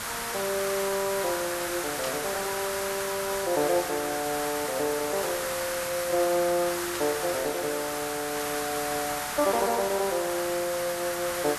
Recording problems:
background hiss; SNR 2 dB
static burst; at 2 s and at 7 s; peak -3 dB vs average level

